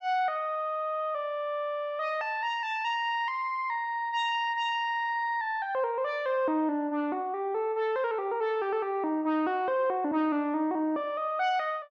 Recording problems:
none

